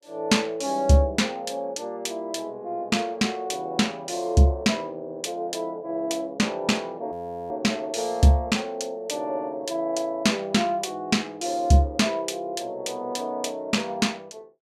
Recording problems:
frozen audio; at 7 s

